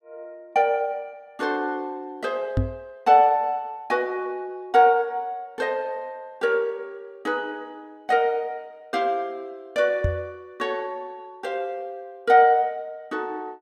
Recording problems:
microphone bump; at 2.5 s and at 10 s; peak +4 dB vs average level

